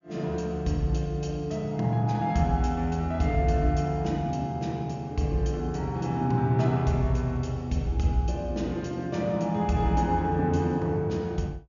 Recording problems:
treble cut off; nothing above 7 kHz

